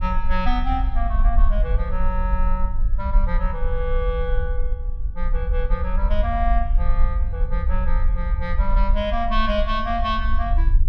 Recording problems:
rumble; below 48 Hz, SNR -3 dB

